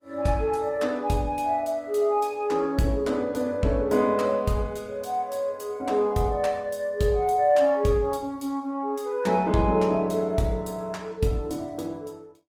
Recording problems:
codec artefacts; Opus, log-spectral distance 2 dB, nothing above 20.1 kHz

